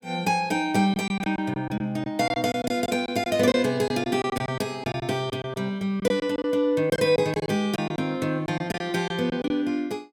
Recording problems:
lost packets; 11% of the sound replaced, filled with silence

